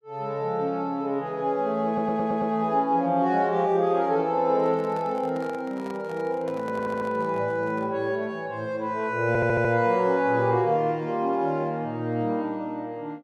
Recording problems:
stutter; at 2 s, at 6.5 s and at 9.5 s
handling noise; from 4.5 to 8 s; peak -11 dB vs average level

